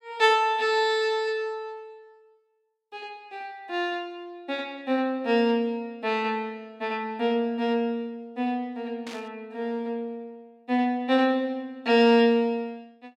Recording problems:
burst of static; at 9 s; peak -11 dB vs average level

